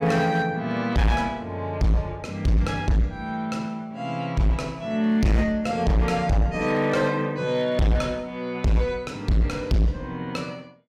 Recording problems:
distortion; hard clipping, signal-to-distortion ratio 6 dB

